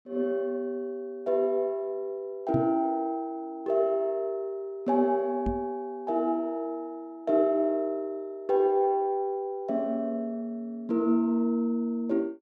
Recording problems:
microphone thump; at 2.5 s and at 5.5 s; peak +2 dB vs average level

